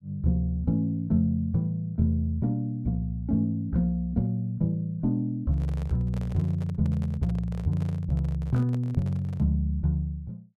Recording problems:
microphone handling noise; from 5.5 to 9.5 s; peak -11 dB vs average level

